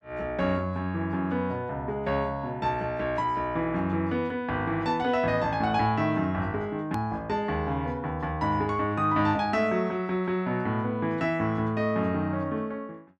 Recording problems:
click at an edit; at 7 s

